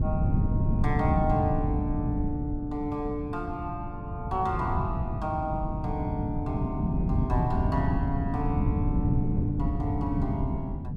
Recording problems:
wind noise; below 180 Hz, SNR -3 dB

